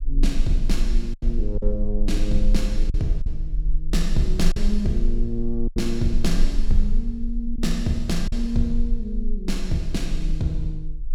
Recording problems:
rumble; below 32 Hz, strongest tone 20 Hz, SNR 1 dB
packet loss; 3% of the sound replaced, filled with silence

